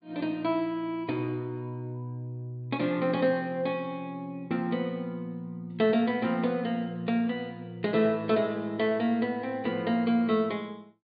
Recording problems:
treble cut off; nothing above 4.7 kHz

